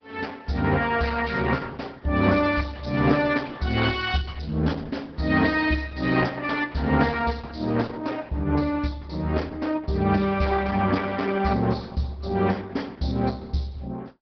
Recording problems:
treble cut off; nothing above 5.2 kHz
lossy codec; Opus, log-spectral distance 5 dB

